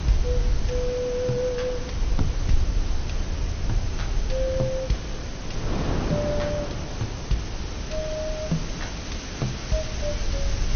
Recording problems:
lossy compression; MP3, then MP2, log-spectral distance 12 dB, nothing above 6.3 kHz
background hiss; SNR 9 dB
low-frequency rumble; below 66 Hz, SNR 3 dB
wind noise; below 460 Hz, SNR 4 dB

